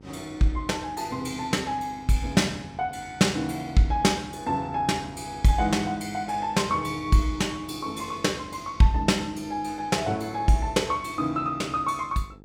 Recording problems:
electrical hum; 50 Hz, harmonics up to 950 Hz, SNR 23 dB

